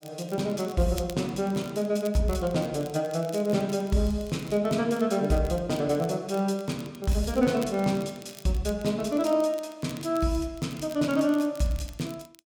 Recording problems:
crackle; vinyl, SNR 21 dB

